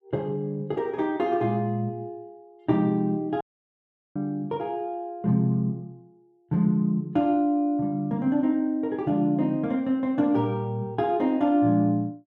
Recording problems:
dropout; at 3.5 s for 1 s

